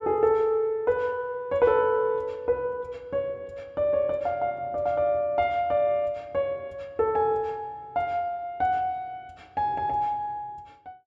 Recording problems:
none

